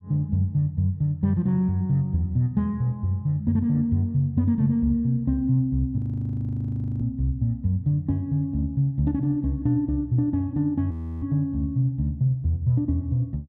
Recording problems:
audio freezing; at 6 s for 1 s and at 11 s

